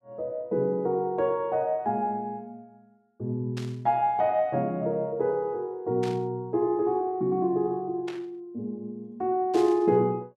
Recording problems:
static burst; 4 times, first at 3.5 s; peak -9 dB vs average level

